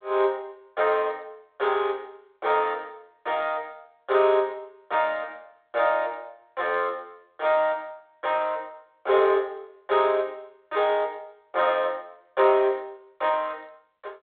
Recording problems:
telephone audio; 320 Hz to 3.7 kHz, G.726

